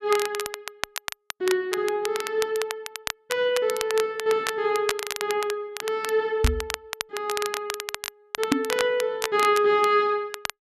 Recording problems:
crackle; vinyl, SNR 8 dB
microphone thump; at 6.5 s and at 8.5 s; peak +7 dB vs average level

